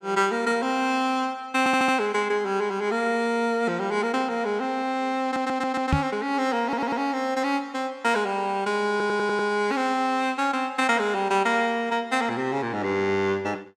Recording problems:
stutter; 4 times, first at 1.5 s
microphone thump; at 6 s; peak +5 dB vs average level

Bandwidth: 15.5 kHz